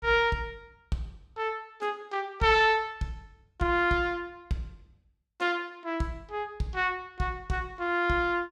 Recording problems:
none

